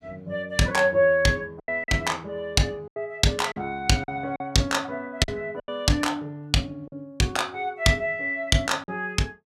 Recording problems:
lost packets; 6% of the sound replaced, filled with silence

